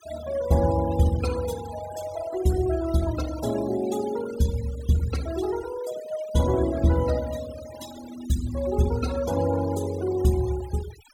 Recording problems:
denoising artefacts; signal-to-artefact ratio 16 dB

